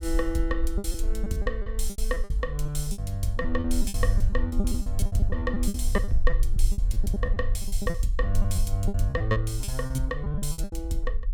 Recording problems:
low-frequency rumble; below 48 Hz, strongest tone 18 Hz, SNR 0 dB
lost packets; 17% of the sound replaced, filled with repeated pitch periods

